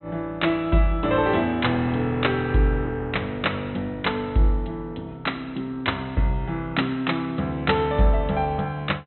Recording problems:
treble cut off; nothing above 4 kHz

